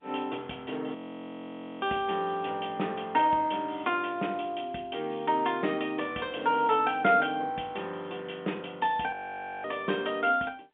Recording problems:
phone line; 190 Hz to 3.5 kHz, G.711
frozen audio; at 1 s for 1 s and at 9 s for 0.5 s

